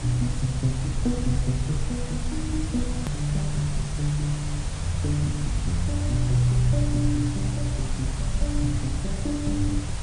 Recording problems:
lossy codec; MP3, log-spectral distance 7 dB, nothing above 13.1 kHz
hiss; SNR 10 dB
rumble; below 100 Hz, SNR 4 dB
click at an edit; at 3 s

